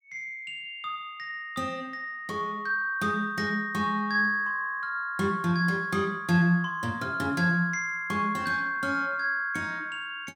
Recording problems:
none

